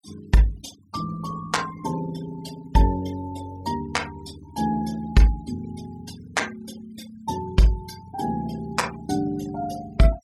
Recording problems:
denoising artefacts; signal-to-artefact ratio 20 dB

